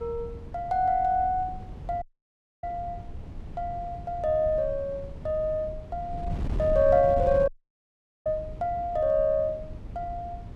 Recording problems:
wind on the microphone; below 130 Hz, SNR 11 dB
audio cutting out; at 2 s for 0.5 s and at 7.5 s for 1 s

